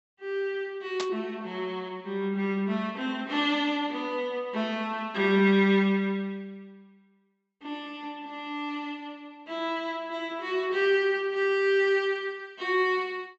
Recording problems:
low-pass filter; nothing above 7.8 kHz
static burst; at 1 s; peak -1 dB vs average level

